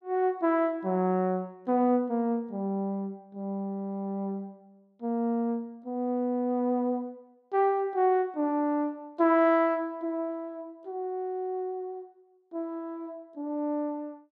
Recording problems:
none

